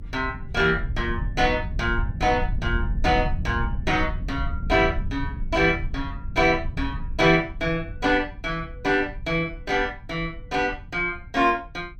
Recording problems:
rumble; below 88 Hz, SNR 8 dB

